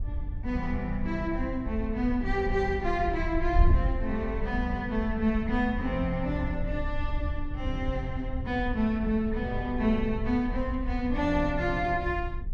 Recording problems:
wind on the microphone; below 74 Hz, SNR 5 dB

